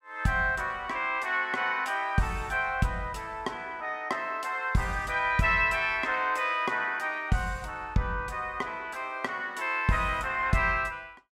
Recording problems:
none

